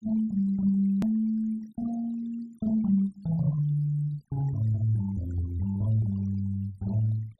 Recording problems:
denoising artefacts; signal-to-artefact ratio 23 dB
hard cut with a click; at 1 s

